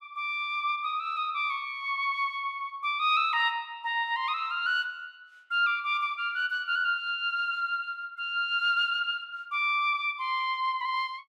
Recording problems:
none

